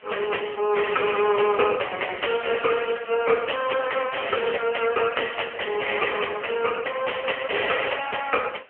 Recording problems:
phone line; 340 Hz to 3 kHz, AMR-NB
distorted audio; soft clipping, signal-to-distortion ratio 11 dB
hiss; SNR 27 dB

